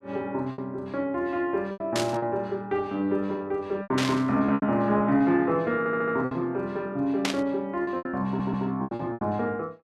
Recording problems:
lost packets; 9% of the sound replaced, filled with repeated pitch periods
static burst; at 2 s, at 4 s and at 7.5 s; peak +4 dB vs average level
audio stuttering; at 6 s and at 8.5 s

